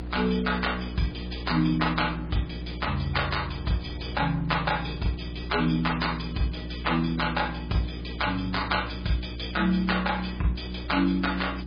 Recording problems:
codec artefacts; MP3, log-spectral distance 6 dB, nothing above 5 kHz
hum; 60 Hz, harmonics up to 360 Hz, SNR 9 dB
wind on the microphone; below 800 Hz, SNR 22 dB

